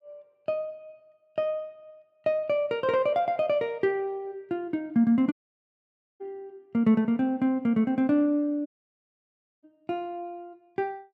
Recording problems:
dropout; at 5.5 s for 1 s and at 8.5 s for 1 s

